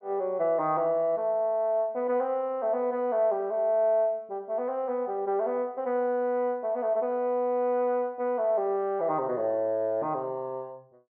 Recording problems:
treble cut off; nothing above 4.4 kHz

